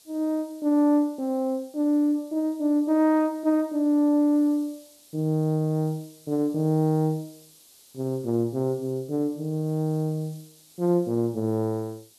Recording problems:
background hiss; SNR 27 dB

